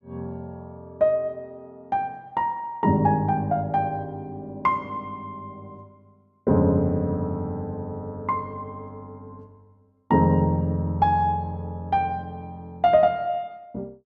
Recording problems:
none

